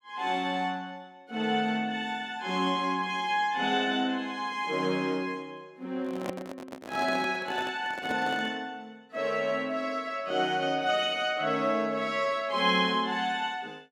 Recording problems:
microphone handling noise; from 6 to 8.5 s; peak -2 dB vs average level

